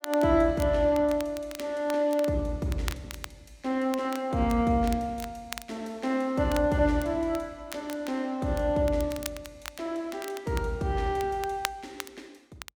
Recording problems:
crackling; vinyl, SNR 15 dB

